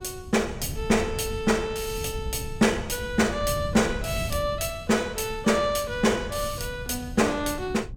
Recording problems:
wind on the microphone; below 130 Hz, SNR 11 dB

